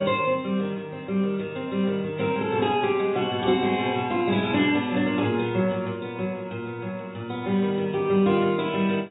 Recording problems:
codec artefacts; AAC, log-spectral distance 4 dB, nothing above 3.7 kHz

